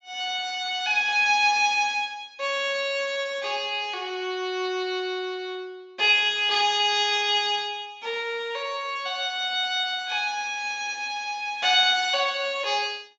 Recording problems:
low-pass filter; nothing above 8 kHz

